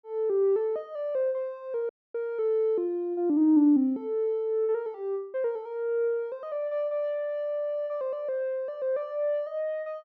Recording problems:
dropout; at 2 s

